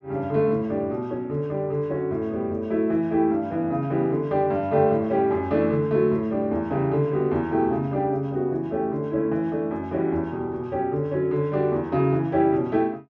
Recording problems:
none

